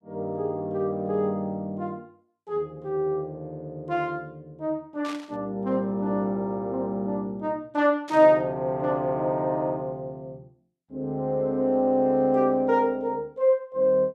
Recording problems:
burst of static; at 5 s and at 8 s; peak -10 dB vs average level

